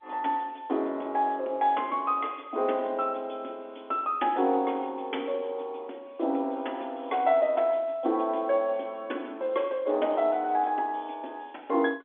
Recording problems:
telephone audio; 240 Hz to 3.6 kHz, G.711

